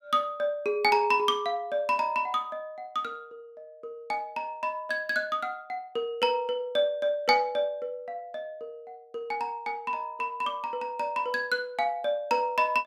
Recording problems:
none

